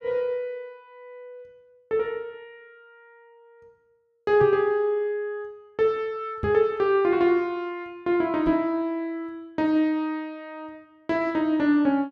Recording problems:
knock on the microphone; at 4.5 s, at 6.5 s and at 8.5 s; peak -2 dB vs average level

